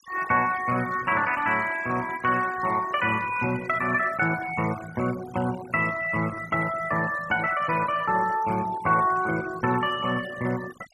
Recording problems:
noise reduction artefacts; signal-to-artefact ratio 15 dB

